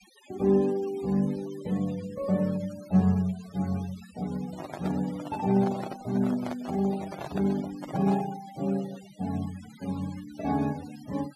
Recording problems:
denoising artefacts; signal-to-artefact ratio 18 dB
microphone handling noise; from 4.5 to 8.5 s; peak -3 dB vs average level

